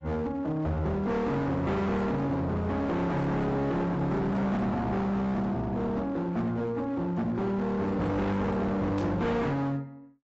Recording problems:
codec artefacts; AAC, log-spectral distance 2 dB, nothing above 7.6 kHz
distortion; hard clipping, signal-to-distortion ratio 7 dB
burst of static; at 9 s; peak -14 dB vs average level

